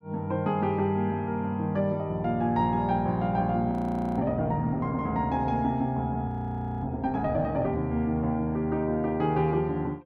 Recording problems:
audio freezing; at 3.5 s and at 6.5 s for 0.5 s

